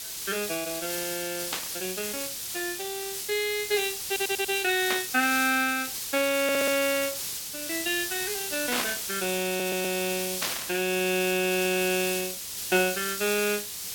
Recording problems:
hiss; SNR 3 dB
static burst; 4 times, first at 1.5 s; peak +2 dB vs average level
audio stuttering; 4 times, first at 4 s

